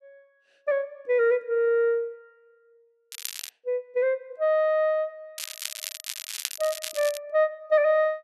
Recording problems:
crackling; at 3 s and from 5.5 to 7 s; loose cable, SNR 9 dB

